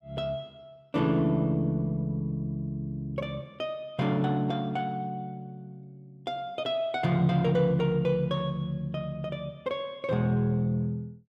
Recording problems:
none

